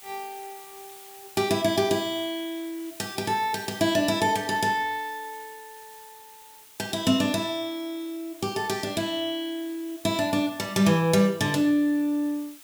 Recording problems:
hiss; slope +1 dB per octave, SNR 20 dB

